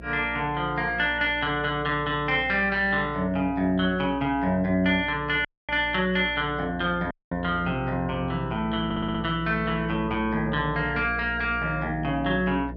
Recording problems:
hum; 60 Hz, harmonics up to 660 Hz, SNR 15 dB
dropout; at 5.5 s and at 7 s
audio stuttering; at 9 s

